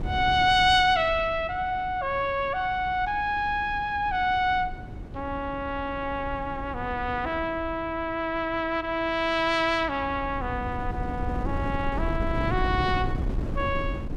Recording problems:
wind noise; below 200 Hz, SNR 9 dB

